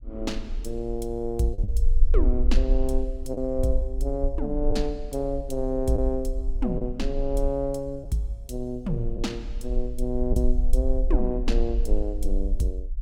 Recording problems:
low-frequency rumble; below 44 Hz, strongest tone 20 Hz, SNR 1 dB
packet loss; 1.7% of the sound replaced, filled with the last packet

